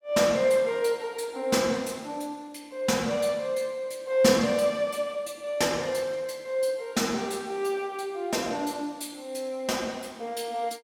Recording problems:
none

